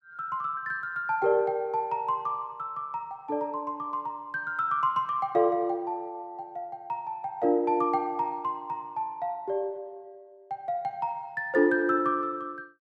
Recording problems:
none

